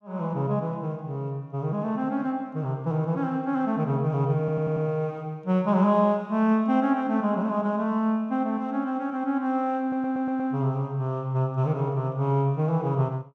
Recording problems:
audio stuttering; at 4.5 s and at 10 s

